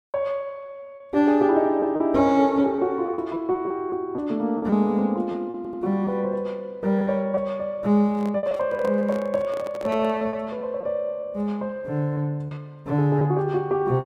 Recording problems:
packet loss; 7% of the sound replaced, filled with repeated pitch periods
stutter; at 5.5 s
microphone handling noise; from 8 to 10 s; peak -9 dB vs average level

